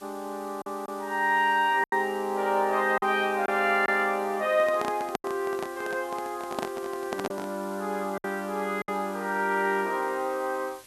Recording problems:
background hiss; slope 0 dB per octave, SNR 22 dB
packet loss; 4% of the sound replaced, filled with silence
microphone handling noise; from 4.5 to 7.5 s; peak 0 dB vs average level

